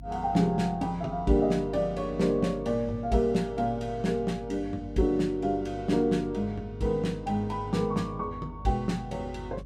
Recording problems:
electrical hum; 50 Hz, harmonics up to 300 Hz, SNR 16 dB

